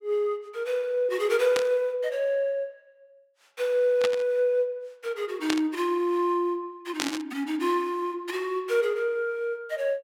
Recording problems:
burst of static; 4 times, first at 1.5 s; peak +3 dB vs average level

